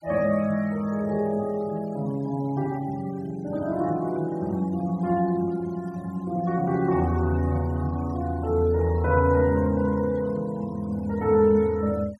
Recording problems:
denoising artefacts; signal-to-artefact ratio 24 dB

